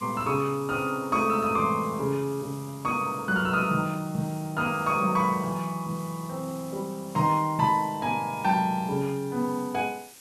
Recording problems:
background hiss; SNR 20 dB

